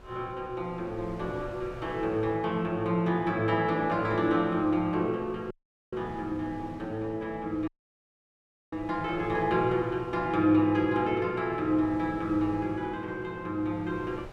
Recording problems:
wind on the microphone; below 720 Hz, SNR 20 dB
dropout; at 5.5 s and at 7.5 s for 1 s

